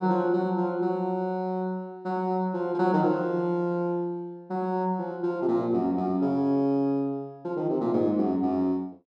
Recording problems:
none

